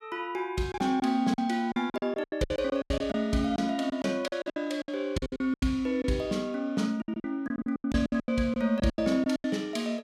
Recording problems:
lost packets; 17% of the sound replaced, filled with silence

